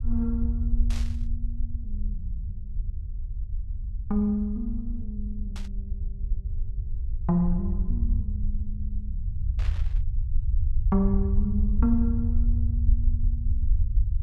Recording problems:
low-frequency rumble; below 68 Hz, SNR 0 dB
burst of static; at 1 s, at 5.5 s and at 9.5 s; peak -8 dB vs average level

